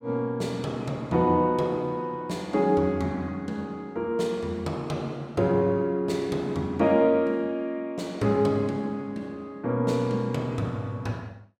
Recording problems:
none

